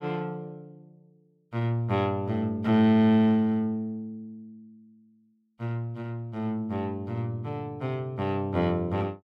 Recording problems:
none

